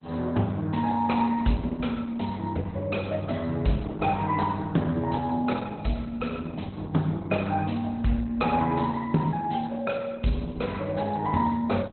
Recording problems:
codec artefacts; Opus, log-spectral distance 4 dB, nothing above 4.1 kHz

